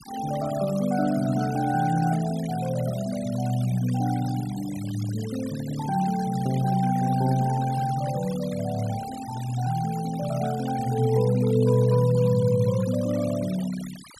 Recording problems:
noise reduction artefacts; signal-to-artefact ratio 17 dB

